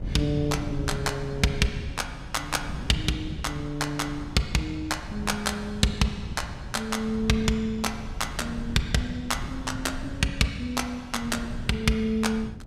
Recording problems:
wind on the microphone; below 170 Hz, SNR 10 dB

